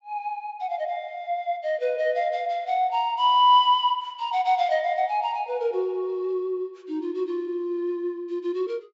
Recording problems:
low-pass filter; nothing above 8 kHz

